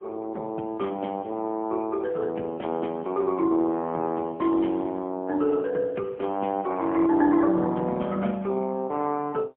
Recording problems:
phone line; 190 Hz to 2.7 kHz, AMR-NB, then MP3

